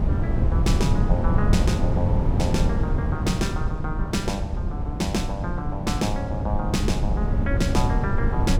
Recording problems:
wind noise; below 140 Hz, SNR -3 dB

